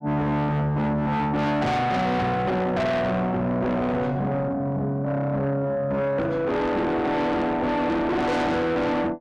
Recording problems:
distortion; soft clipping, signal-to-distortion ratio 6 dB

